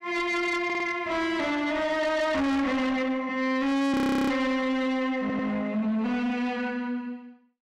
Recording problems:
distortion; soft clipping, signal-to-distortion ratio 6 dB
audio stuttering; at 0.5 s and at 5 s
frozen audio; at 4 s

